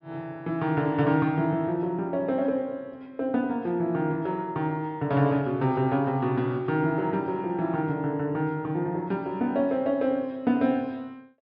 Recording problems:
treble cut off; nothing above 5.5 kHz

